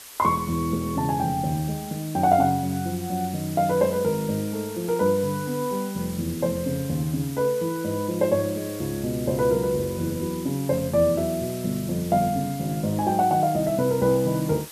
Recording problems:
hiss; slope +1 dB per octave, SNR 15 dB

